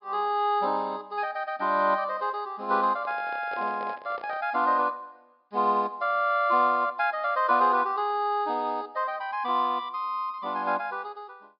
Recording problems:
treble missing; nothing above 5.5 kHz
microphone handling noise; from 3 to 4.5 s; peak -10 dB vs average level

